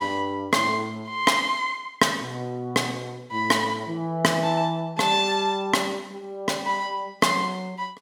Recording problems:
none

